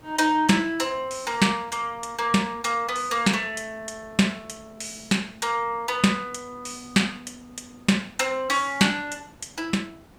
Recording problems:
hiss; slope -6 dB per octave, SNR 27 dB

